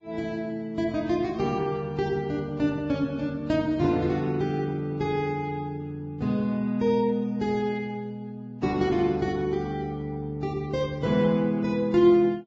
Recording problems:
lossy compression; Vorbis, log-spectral distance 2 dB

